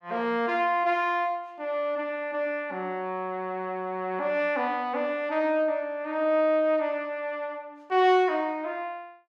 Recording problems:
none

